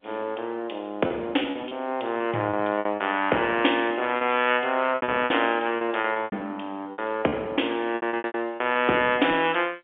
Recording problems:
telephone audio; 240 Hz to 3.4 kHz, G.711
packet loss; 12% of the sound replaced, filled with repeated pitch periods

